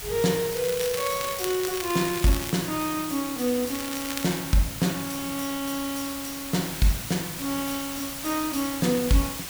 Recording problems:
hiss; slope 0 dB per octave, SNR 6 dB
crackle; from 0.5 to 2.5 s and at 4 s; loose cable, SNR 8 dB

